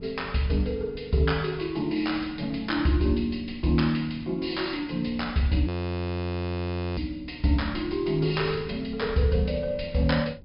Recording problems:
treble missing; nothing above 5.5 kHz
wind on the microphone; below 170 Hz, SNR 18 dB
audio freezing; at 5.5 s for 1.5 s

